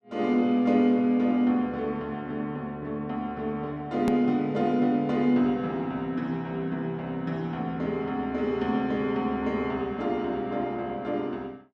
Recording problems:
hard cut with a click; at 4 s

